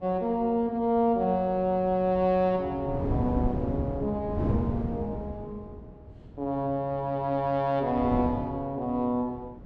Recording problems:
wind on the microphone; below 280 Hz, SNR 7 dB

